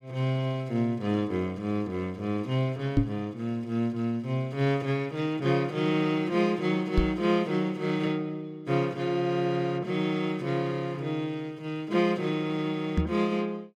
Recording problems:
knock on the microphone; at 3 s, at 7 s and at 13 s; peak +8 dB vs average level

